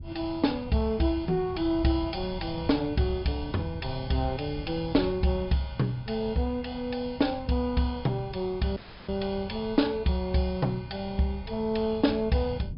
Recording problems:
treble cut off; nothing above 5.5 kHz
wind noise; below 140 Hz, SNR 13 dB
dropout; at 9 s

